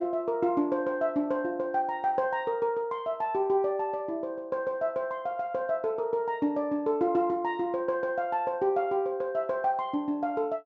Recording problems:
treble cut off; nothing above 8 kHz

